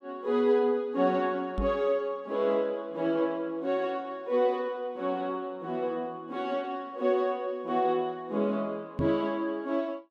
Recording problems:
microphone bump; at 1.5 s and at 9 s; peak +1 dB vs average level

